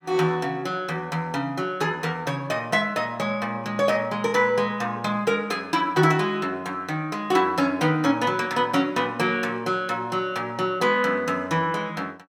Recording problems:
none

